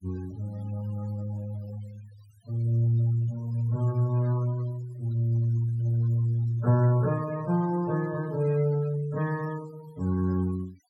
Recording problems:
noise reduction artefacts; signal-to-artefact ratio 21 dB

